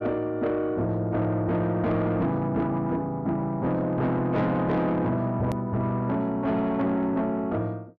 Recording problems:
distorted audio; soft clipping, signal-to-distortion ratio 11 dB
edit click; at 5.5 s

